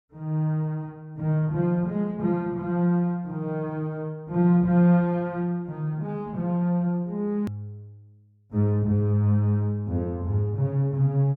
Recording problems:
edit click; at 7.5 s

